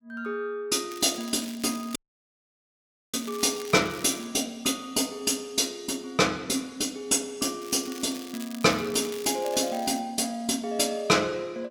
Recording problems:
crackling; from 1 to 4.5 s and from 7.5 to 10 s; loose cable, SNR 16 dB
audio cutting out; at 2 s for 1 s

